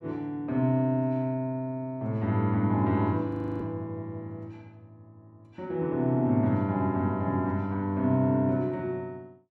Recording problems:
audio freezing; at 3.5 s

